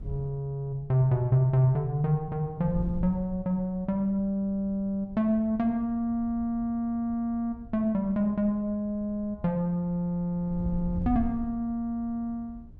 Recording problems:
wind noise; below 92 Hz, SNR 16 dB

